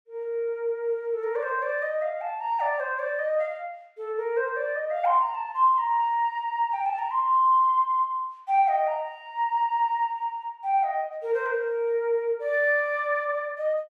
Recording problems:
none

